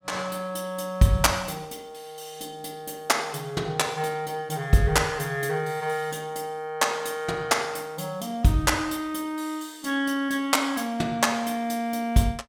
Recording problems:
none

